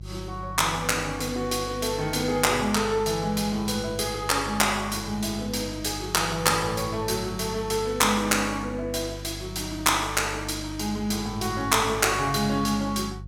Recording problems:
electrical hum; 50 Hz, harmonics up to 350 Hz, SNR 14 dB

